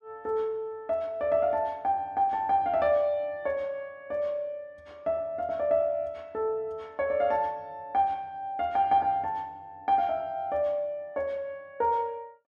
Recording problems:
none

